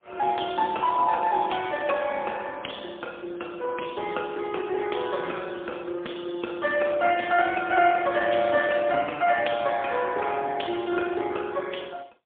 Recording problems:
telephone audio; 220 Hz to 3.4 kHz, AMR-NB, then MP3

